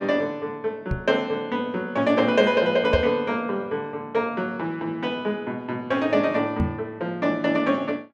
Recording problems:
microphone bump; at 1 s, at 3 s and at 6.5 s; peak +4 dB vs average level

